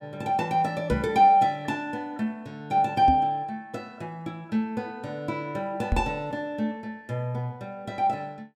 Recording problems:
knock on the microphone; at 1 s, at 3 s and at 6 s; peak +4 dB vs average level

